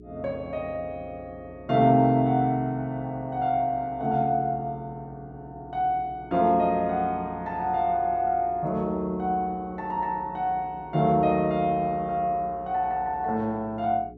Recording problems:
electrical hum; 60 Hz, harmonics up to 420 Hz, SNR 21 dB

